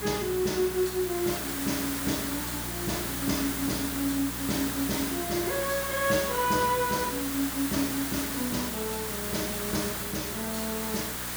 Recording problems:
hum; 60 Hz, harmonics up to 360 Hz, SNR 12 dB
hiss; SNR 2 dB
crackling; from 7.5 to 8.5 s; loose cable, SNR 29 dB

